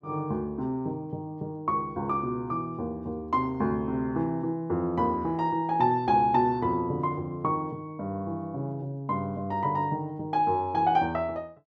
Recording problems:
none

